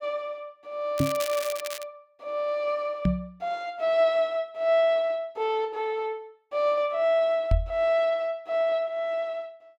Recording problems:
crackle; at 1 s; loose cable, SNR 10 dB
knock on the microphone; at 1 s, at 3 s and at 7.5 s; peak +6 dB vs average level

